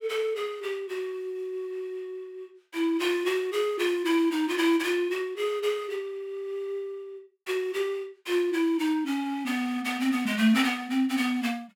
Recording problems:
none

